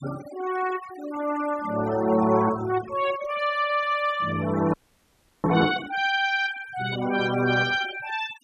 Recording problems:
denoising artefacts; signal-to-artefact ratio 14 dB
frozen audio; at 4.5 s for 0.5 s

